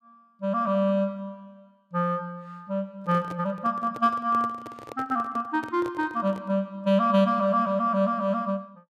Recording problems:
microphone handling noise; from 3 to 6.5 s; peak -10 dB vs average level

